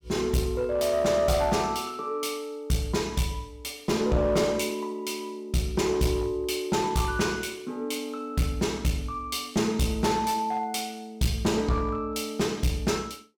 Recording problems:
distortion; hard clipping, uneven, signal-to-distortion ratio 10 dB

